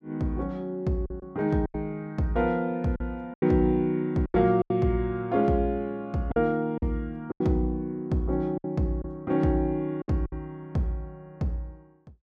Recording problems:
lost packets; 7% of the sound replaced, filled with silence

